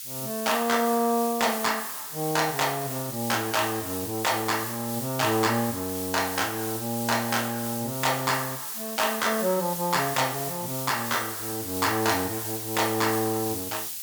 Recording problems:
hiss; SNR 5 dB

